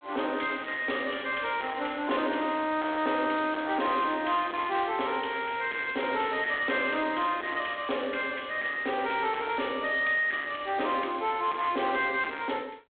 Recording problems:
phone line; 260 Hz to 3.7 kHz, G.726
distortion; soft clipping, signal-to-distortion ratio 11 dB

